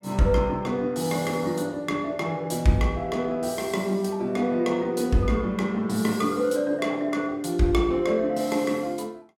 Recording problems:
none

